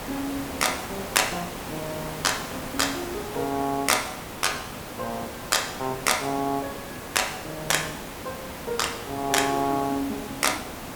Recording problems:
background hiss; slope -5 dB per octave, SNR 9 dB

